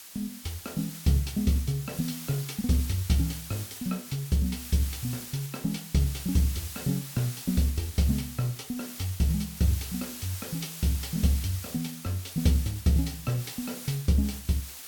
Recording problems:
background hiss; slope +2 dB per octave, SNR 10 dB

